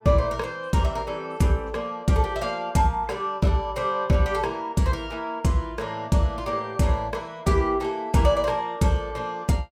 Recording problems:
none

